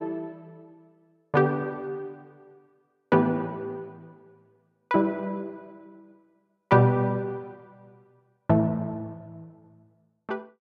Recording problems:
none

